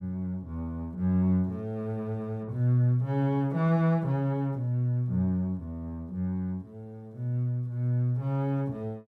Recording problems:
none

